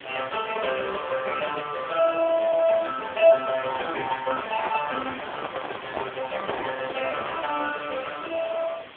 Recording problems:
telephone audio; 220 Hz to 3.4 kHz, AMR-NB
background hiss; SNR 16 dB
microphone handling noise; from 3.5 to 7.5 s; peak 0 dB vs average level

